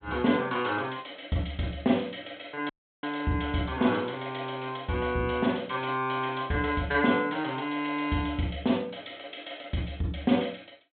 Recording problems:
treble cut off; nothing above 4 kHz
audio cutting out; at 2.5 s

